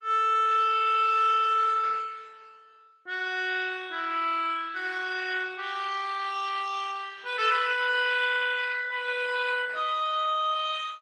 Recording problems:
lossy compression; Opus, log-spectral distance 4 dB, nothing above 11 kHz

